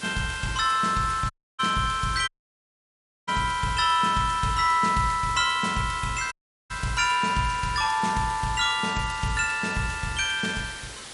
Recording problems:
lossy codec; MP3, log-spectral distance 8 dB, nothing above 11 kHz
background hiss; slope -1 dB per octave, SNR 14 dB
audio cutting out; at 1.5 s, at 2.5 s for 1 s and at 6.5 s

